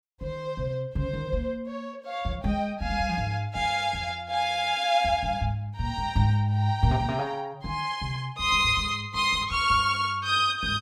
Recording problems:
none

